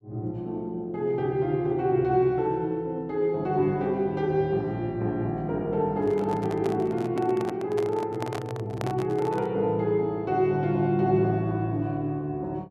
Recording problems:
microphone handling noise; from 6 to 9.5 s; peak -3 dB vs average level

